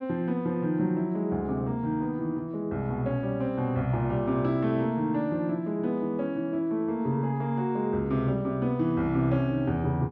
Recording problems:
none

